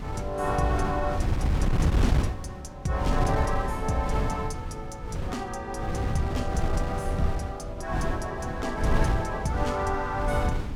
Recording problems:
wind on the microphone; below 150 Hz, SNR -1 dB

